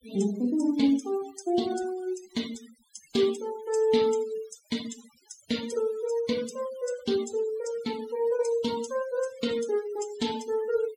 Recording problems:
denoising artefacts; signal-to-artefact ratio 14 dB

